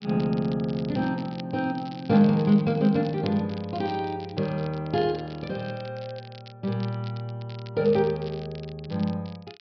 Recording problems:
low-pass filter; nothing above 5.5 kHz
crackle; vinyl, SNR 21 dB

